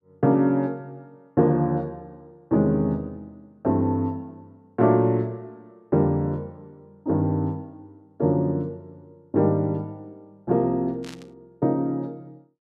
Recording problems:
burst of static; at 11 s; peak -12 dB vs average level

